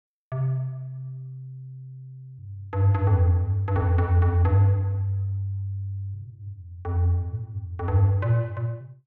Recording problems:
none

